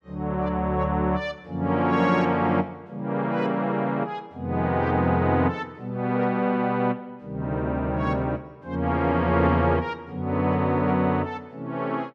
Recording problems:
none

